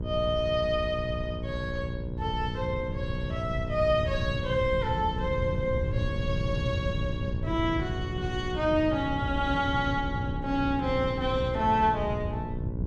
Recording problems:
mains hum; 60 Hz, harmonics up to 1 kHz, SNR 8 dB
wind on the microphone; below 140 Hz, SNR 5 dB

